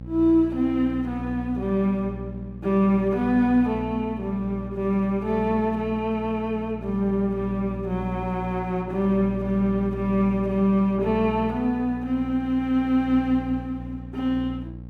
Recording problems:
hum; 60 Hz, harmonics up to 540 Hz, SNR 12 dB

